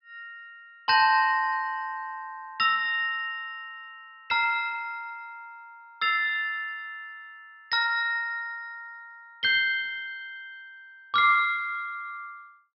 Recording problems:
treble cut off; nothing above 5.5 kHz

